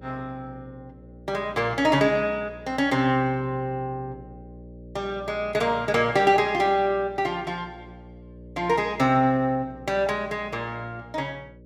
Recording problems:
electrical hum; 60 Hz, harmonics up to 600 Hz, SNR 21 dB

